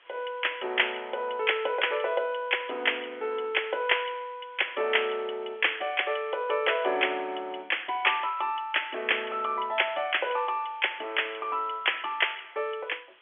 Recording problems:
phone line; 300 Hz to 3.4 kHz, G.711
hiss; SNR 29 dB

